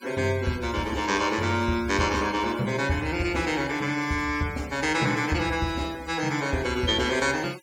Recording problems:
denoising artefacts; signal-to-artefact ratio 18 dB

